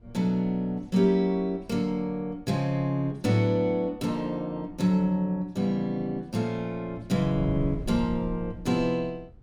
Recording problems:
wind on the microphone; below 120 Hz, SNR 16 dB

